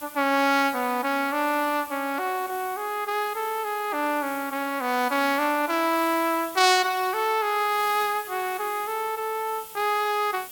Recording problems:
hiss; slope 0 dB per octave, SNR 15 dB

